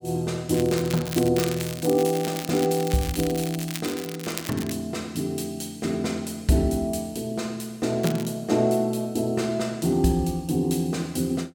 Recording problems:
crackling; from 0.5 to 4.5 s and at 8 s; loose cable, SNR 10 dB

